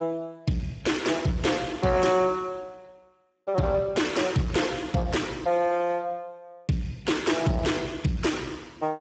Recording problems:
lossy compression; Speex, log-spectral distance 4 dB, nothing above 7.8 kHz
distortion; soft clipping, signal-to-distortion ratio 11 dB

